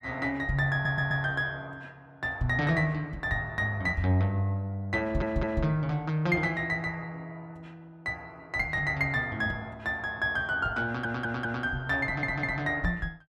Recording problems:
audio stuttering; 4 times, first at 0.5 s

